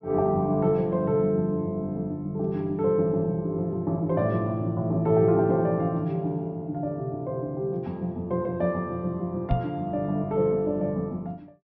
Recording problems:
treble cut off; nothing above 5.5 kHz
microphone bump; at 9.5 s; peak +5 dB vs average level

